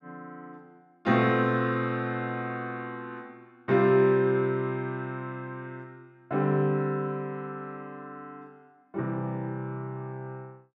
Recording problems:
none

